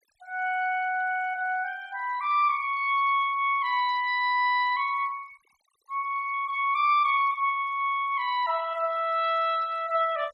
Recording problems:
denoising artefacts; signal-to-artefact ratio 26 dB

